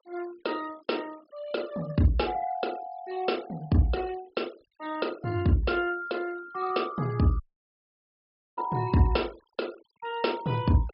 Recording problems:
treble cut off; nothing above 5.5 kHz
denoising artefacts; signal-to-artefact ratio 21 dB
audio cutting out; at 7.5 s for 1 s

